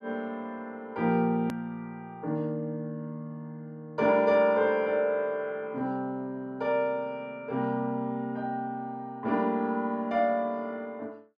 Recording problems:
hard cut with a click; at 1.5 s

